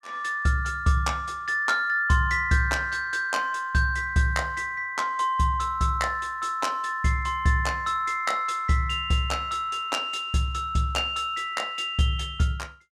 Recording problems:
none

